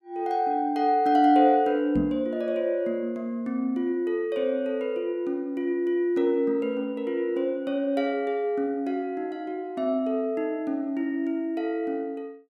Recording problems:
microphone bump; at 2 s; peak +1 dB vs average level

